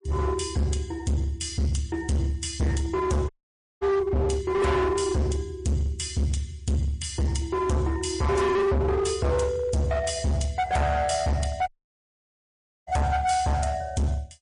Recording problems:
lossy codec; MP3, log-spectral distance 2 dB, nothing above 10.4 kHz
distortion; hard clipping, uneven, signal-to-distortion ratio 5 dB
dropout; at 3.5 s for 0.5 s and at 12 s for 1 s

